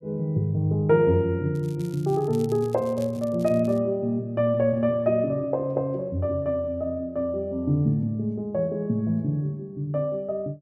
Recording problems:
crackling; from 1.5 to 4 s; loose cable, SNR 25 dB

